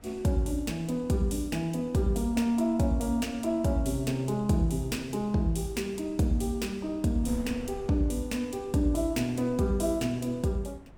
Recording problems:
wind on the microphone; below 240 Hz, SNR 22 dB

